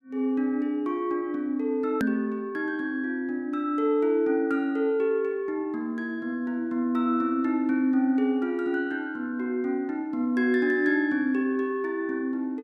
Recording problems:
edit click; at 2 s

